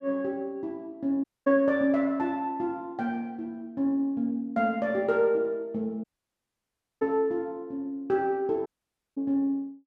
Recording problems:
audio cutting out; at 1 s, at 6 s for 1 s and at 8.5 s for 0.5 s

